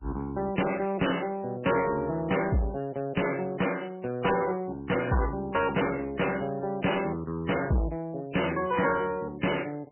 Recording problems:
lossy compression; MP3, log-spectral distance 6 dB, nothing above 3 kHz
distortion; soft clipping, signal-to-distortion ratio 6 dB

